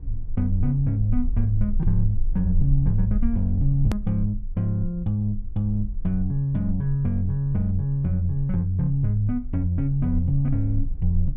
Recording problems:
rumble; below 42 Hz, strongest tone 22 Hz, SNR 8 dB
edit click; at 4 s

